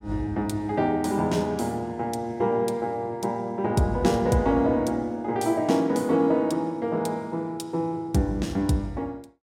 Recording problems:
none

